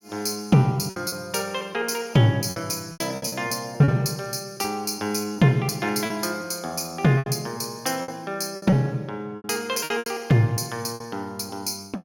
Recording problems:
lost packets; 9% of the sound replaced, filled with repeated pitch periods

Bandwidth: 17.5 kHz